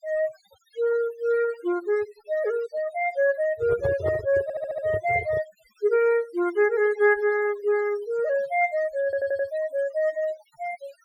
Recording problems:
denoising artefacts; signal-to-artefact ratio 18 dB
microphone handling noise; from 3.5 to 5.5 s; peak -2 dB vs average level
audio stuttering; at 4.5 s and at 9 s

